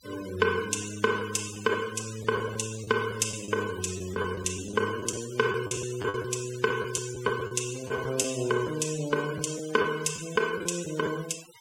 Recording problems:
noise reduction artefacts; signal-to-artefact ratio 14 dB
packet loss; 8% of the sound replaced, filled with the last packet

